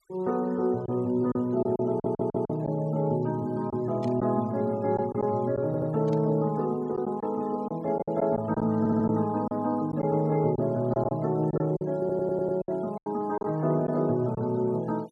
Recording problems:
denoising artefacts; signal-to-artefact ratio 27 dB
lost packets; 6% of the sound replaced, filled with silence
audio stuttering; 4 times, first at 2 s
static burst; at 4 s and at 6 s; peak -16 dB vs average level

